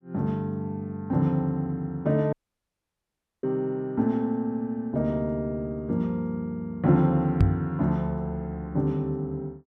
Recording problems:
dropout; at 2.5 s for 1 s
knock on the microphone; at 7.5 s; peak +8 dB vs average level

